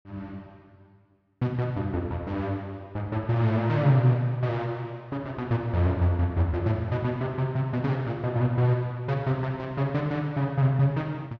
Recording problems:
none

